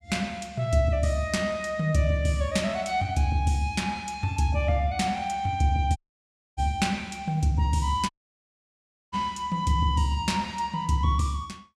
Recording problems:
dropout; at 6 s for 0.5 s and at 8 s for 1 s

